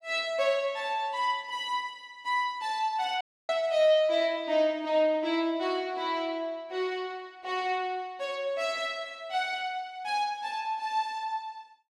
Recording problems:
dropout; at 3 s

